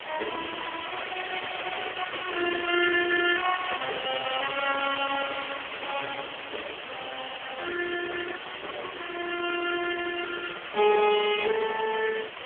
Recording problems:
telephone audio; 300 Hz to 3.3 kHz, AMR-NB
background hiss; SNR 8 dB

